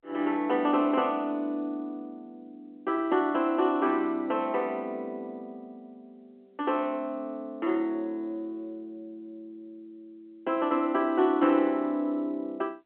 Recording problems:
phone line; 240 Hz to 3.5 kHz, G.711

